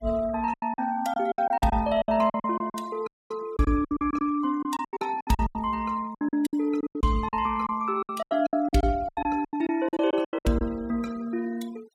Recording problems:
noise reduction artefacts; signal-to-artefact ratio 22 dB
packet loss; 18% of the sound replaced, filled with silence
audio cutting out; at 3 s

